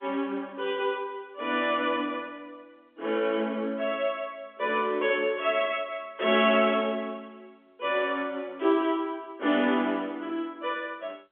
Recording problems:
phone line; 240 Hz to 3.5 kHz, G.711

